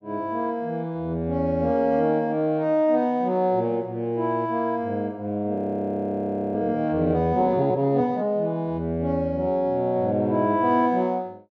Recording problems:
frozen audio; at 5.5 s for 1 s

